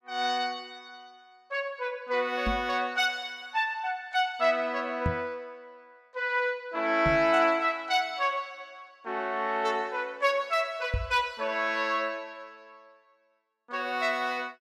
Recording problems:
microphone bump; 4 times, first at 2.5 s; peak +2 dB vs average level

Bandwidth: 15.5 kHz